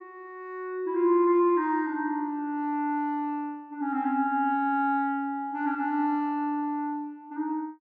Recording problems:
none

